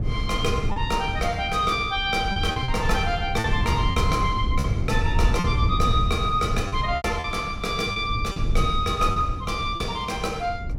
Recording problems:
rumble; below 110 Hz, SNR 3 dB
lost packets; 6% of the sound replaced, filled with repeated pitch periods

